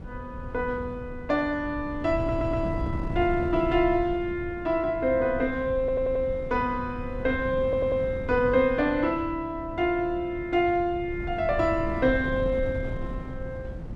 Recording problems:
wind noise; below 180 Hz, SNR 10 dB
audio stuttering; at 2 s, at 6 s and at 7.5 s

